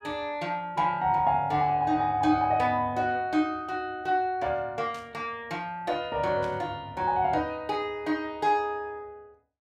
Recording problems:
static burst; at 5 s and at 6.5 s; peak -13 dB vs average level

